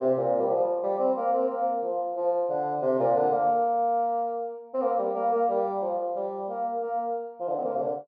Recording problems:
none

